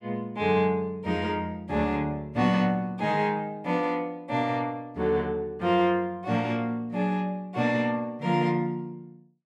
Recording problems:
none

